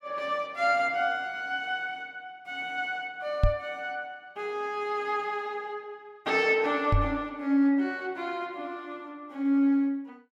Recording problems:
knock on the microphone; at 3.5 s and at 7 s; peak +8 dB vs average level

